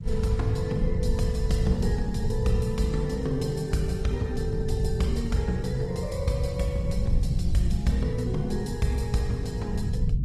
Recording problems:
lossy codec; Opus, log-spectral distance 2 dB, nothing above 14.3 kHz
rumble; below 120 Hz, SNR 3 dB

